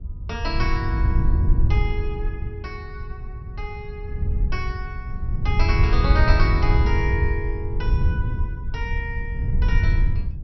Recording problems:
low-pass filter; nothing above 5.7 kHz
wind noise; below 90 Hz, SNR -6 dB

